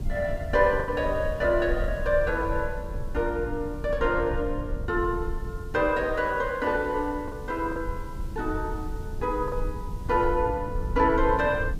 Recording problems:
hiss; SNR 29 dB
rumble; below 80 Hz, SNR 9 dB
lost packets; 2% of the sound replaced, filled with the last packet

